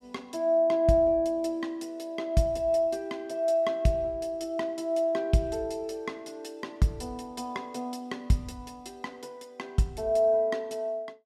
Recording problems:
none

